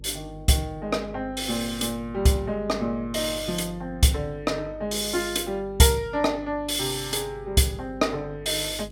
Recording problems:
hum; 50 Hz, harmonics up to 500 Hz, SNR 18 dB

